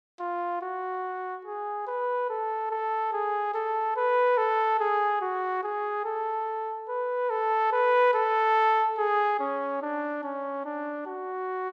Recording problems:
none

